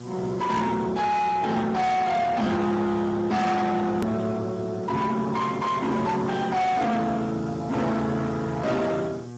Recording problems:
lossy compression; Speex, log-spectral distance 5 dB, nothing above 13.1 kHz
distortion; soft clipping, signal-to-distortion ratio 7 dB
electrical hum; 60 Hz, harmonics up to 1.6 kHz, SNR 17 dB
background hiss; SNR 30 dB
click at an edit; at 4 s

